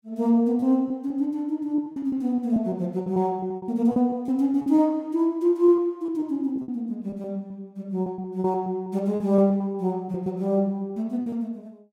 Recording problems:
lost packets; 11% of the sound replaced, filled with repeated pitch periods

